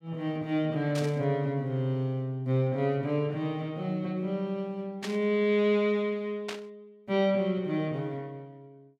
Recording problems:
burst of static; at 1 s, at 5 s and at 6.5 s; peak -3 dB vs average level

